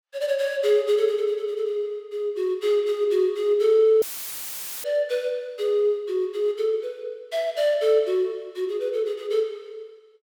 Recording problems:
dropout; at 4 s for 1 s; filled with static

